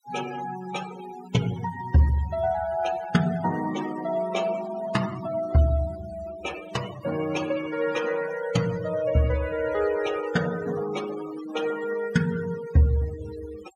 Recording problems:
noise reduction artefacts; signal-to-artefact ratio 13 dB

